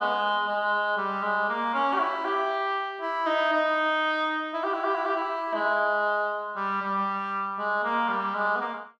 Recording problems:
none

